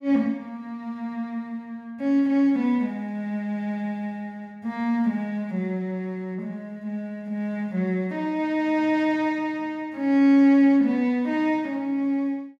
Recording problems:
none

